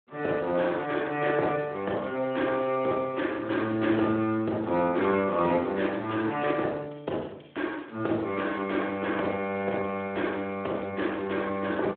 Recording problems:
telephone audio; 240 Hz to 3.5 kHz, Speex

